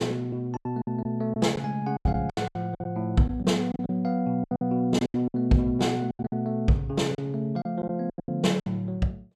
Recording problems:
packet loss; 14% of the sound replaced, filled with silence

